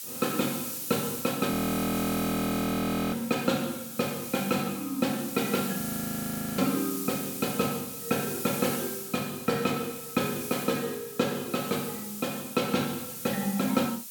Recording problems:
hiss; slope +3 dB per octave, SNR 6 dB
frozen audio; at 1.5 s for 1.5 s and at 6 s for 1 s

